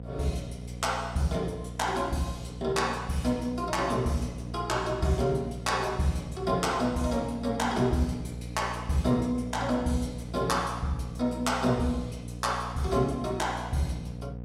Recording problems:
electrical hum; 60 Hz, harmonics up to 780 Hz, SNR 10 dB

